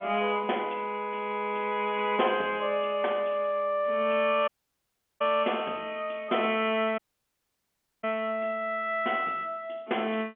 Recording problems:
phone line; 260 Hz to 3.4 kHz, G.711
audio cutting out; at 4.5 s for 0.5 s and at 7 s for 1 s

